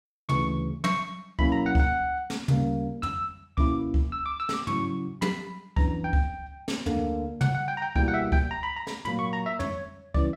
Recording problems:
none

